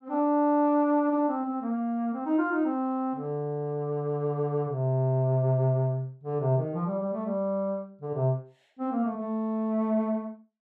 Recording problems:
none

